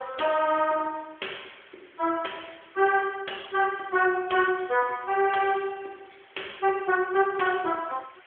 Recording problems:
phone line; 320 Hz to 3.4 kHz, AMR-NB
background hiss; SNR 28 dB

